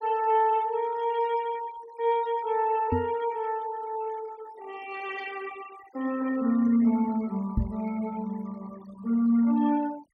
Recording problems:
denoising artefacts; signal-to-artefact ratio 22 dB
microphone thump; at 3 s and at 7.5 s; peak +4 dB vs average level

